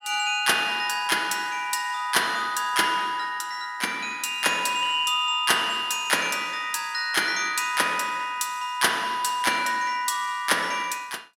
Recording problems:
none

